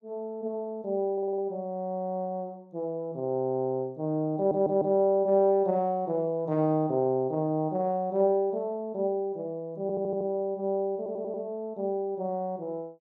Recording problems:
stutter; 4 times, first at 1 s

